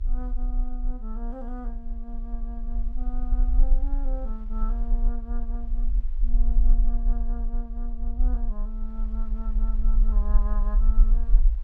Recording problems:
low-frequency rumble; below 40 Hz, strongest tone 28 Hz, SNR -13 dB
wind on the microphone; below 770 Hz, SNR 21 dB

